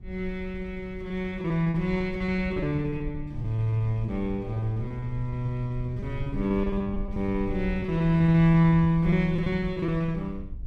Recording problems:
rumble; below 86 Hz, SNR 13 dB
packet loss; 15% of the sound replaced, filled with repeated pitch periods

